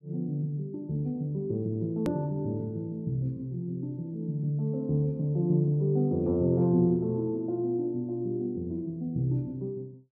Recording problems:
hard cut with a click; at 2 s

